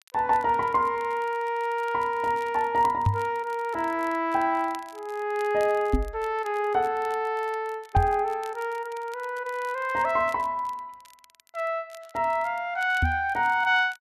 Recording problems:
crackling; vinyl, SNR 26 dB
microphone bump; 4 times, first at 3 s; peak +6 dB vs average level

